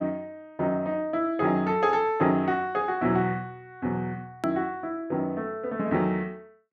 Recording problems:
click at an edit; at 4.5 s

